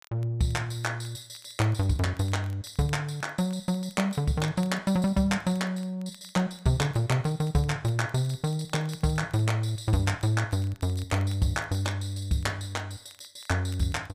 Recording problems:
crackling; vinyl, SNR 29 dB

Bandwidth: 15 kHz